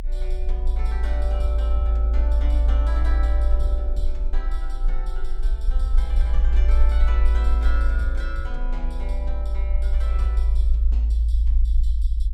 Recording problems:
low-frequency rumble; below 56 Hz, SNR -13 dB

